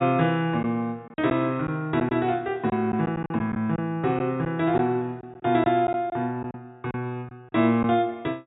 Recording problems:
low-pass filter; nothing above 4 kHz
lost packets; 6% of the sound replaced, filled with silence

